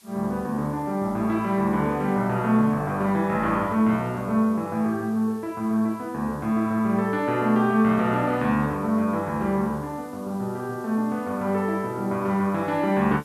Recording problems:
hiss; slope +1 dB per octave, SNR 28 dB

